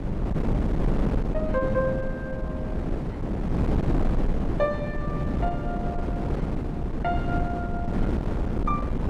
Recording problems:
wind noise; below 260 Hz, SNR -3 dB

